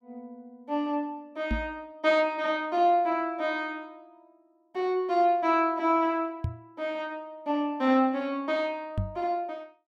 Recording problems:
knock on the microphone; at 1.5 s, at 6.5 s and at 9 s; peak +1 dB vs average level

